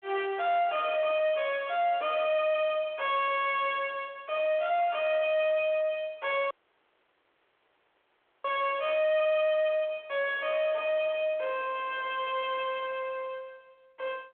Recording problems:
phone line; 300 Hz to 3.5 kHz, G.726
distortion; soft clipping, signal-to-distortion ratio 11 dB
dropout; at 6.5 s for 2 s

